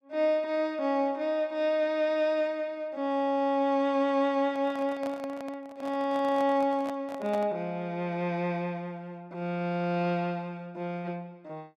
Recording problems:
microphone handling noise; from 4.5 to 7.5 s; peak -6 dB vs average level

